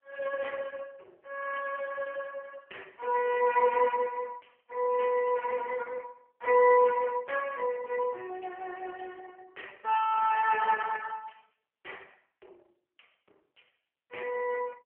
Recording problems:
phone line; 240 Hz to 2.9 kHz, AMR-NB

